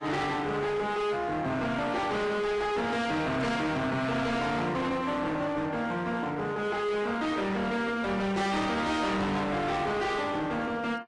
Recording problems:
lossy codec; AAC, log-spectral distance 3 dB, nothing above 10.4 kHz
distorted audio; hard clipping, signal-to-distortion ratio 7 dB

